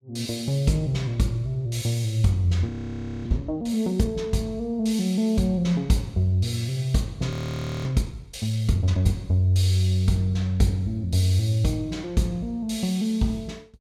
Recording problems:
frozen audio; at 2.5 s for 0.5 s and at 7.5 s for 0.5 s

